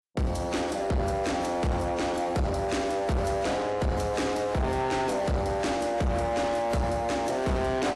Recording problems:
lossy codec; AAC, log-spectral distance 3 dB, nothing above 11.6 kHz
distortion; soft clipping, signal-to-distortion ratio 7 dB

